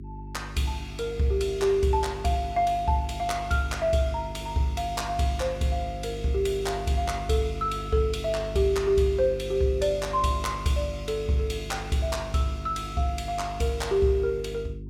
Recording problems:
hum; 50 Hz, harmonics up to 400 Hz, SNR 12 dB

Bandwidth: 17 kHz